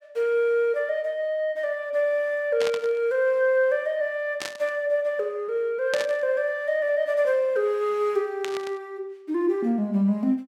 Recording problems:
burst of static; 4 times, first at 2.5 s; peak -2 dB vs average level

